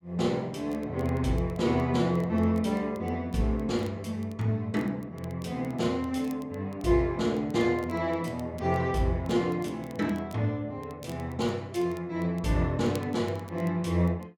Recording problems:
crackle; vinyl, SNR 27 dB

